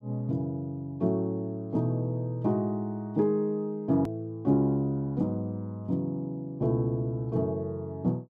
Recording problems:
edit click; at 4 s

